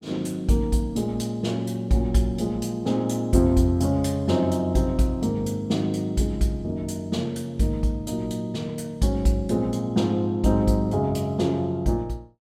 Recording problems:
none

